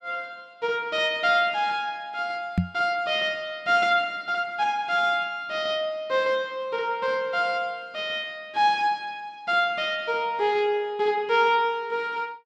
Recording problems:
microphone bump; at 2.5 s; peak +5 dB vs average level

